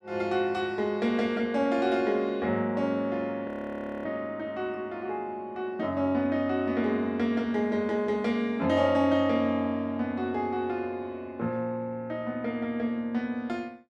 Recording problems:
frozen audio; at 3.5 s for 0.5 s

